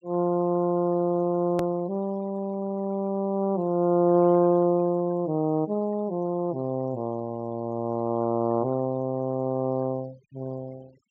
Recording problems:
treble cut off; nothing above 7.7 kHz
denoising artefacts; signal-to-artefact ratio 27 dB
edit click; at 1.5 s

